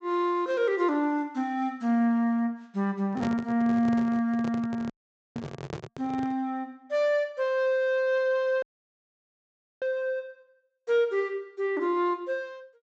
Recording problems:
low-pass filter; nothing above 8 kHz
microphone handling noise; from 3 to 6.5 s; peak -4 dB vs average level
dropout; at 5 s and at 8.5 s for 1 s

